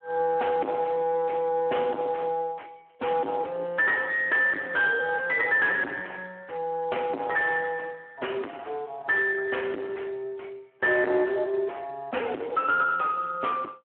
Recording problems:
phone line; 260 Hz to 3.2 kHz, Speex
distorted audio; soft clipping, signal-to-distortion ratio 6 dB

